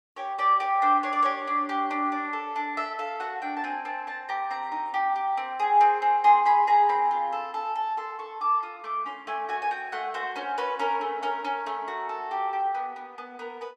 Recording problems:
none

